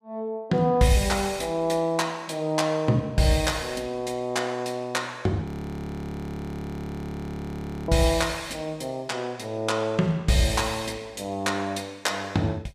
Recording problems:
audio freezing; at 5.5 s for 2.5 s

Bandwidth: 14.5 kHz